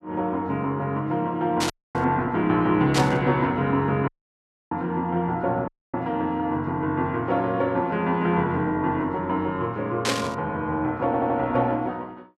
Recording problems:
burst of static; at 1.5 s, at 3 s and at 10 s; peak +3 dB vs average level
audio cutting out; at 1.5 s, at 4 s for 0.5 s and at 5.5 s
stutter; at 11 s

